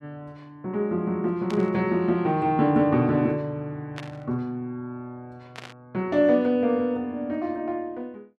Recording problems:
static burst; at 1.5 s, at 4 s and at 5.5 s; peak -8 dB vs average level

